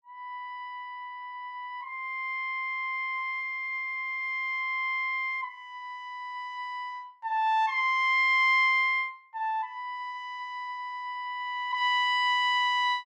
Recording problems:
none

